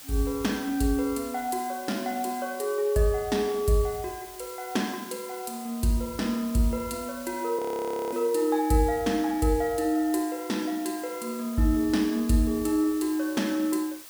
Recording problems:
background hiss; slope +1 dB per octave, SNR 16 dB
frozen audio; at 7.5 s for 0.5 s

